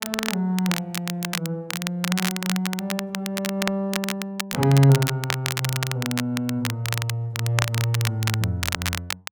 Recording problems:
crackle; vinyl, SNR 4 dB

